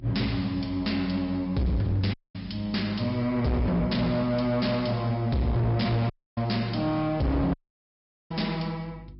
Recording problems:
low-pass filter; nothing above 5.3 kHz
lossy compression; Vorbis, log-spectral distance 3 dB
distortion; hard clipping, signal-to-distortion ratio 8 dB
hum; 50 Hz, harmonics up to 350 Hz, SNR 21 dB
audio cutting out; at 2 s, at 6 s and at 7.5 s for 1 s

